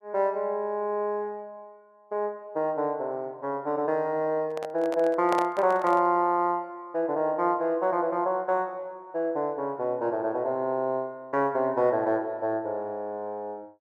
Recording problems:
microphone handling noise; from 4.5 to 6 s; peak +1 dB vs average level

